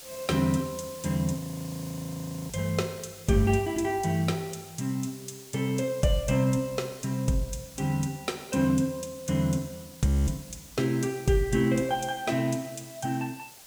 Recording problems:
hiss; slope 0 dB per octave, SNR 18 dB
frozen audio; at 1.5 s for 1 s and at 10 s

